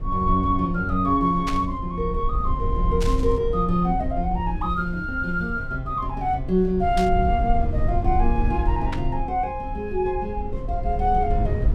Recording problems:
rumble; below 74 Hz, SNR 5 dB
burst of static; 4 times, first at 1.5 s; peak -3 dB vs average level

